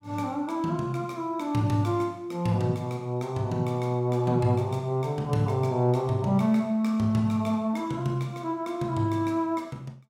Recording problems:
none

